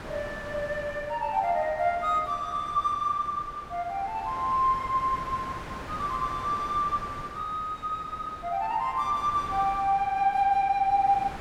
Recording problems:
wind noise; below 1.5 kHz, SNR 14 dB

